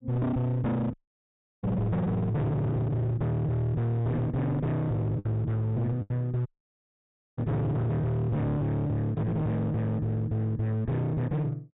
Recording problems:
treble cut off; nothing above 4 kHz
distortion; hard clipping, signal-to-distortion ratio 6 dB
packet loss; 1.9% of the sound replaced, filled with the last packet
audio cutting out; at 1 s for 0.5 s and at 6.5 s for 1 s

